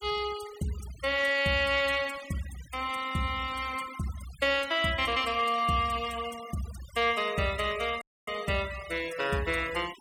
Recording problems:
denoising artefacts; signal-to-artefact ratio 17 dB
audio cutting out; at 8 s

